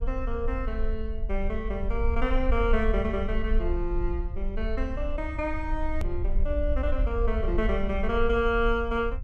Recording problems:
rumble; below 54 Hz, SNR 2 dB
hard cut with a click; at 6 s

